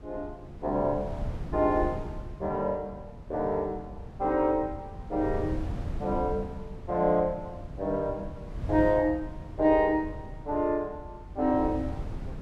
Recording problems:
wind on the microphone; below 150 Hz, SNR 11 dB

